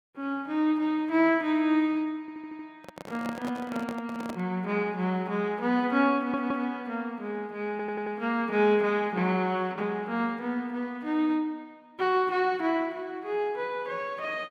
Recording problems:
audio stuttering; at 2 s, at 6 s and at 7.5 s
microphone handling noise; from 3 to 4.5 s; peak -6 dB vs average level

